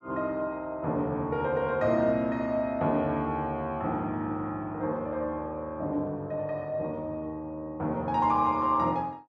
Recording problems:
none

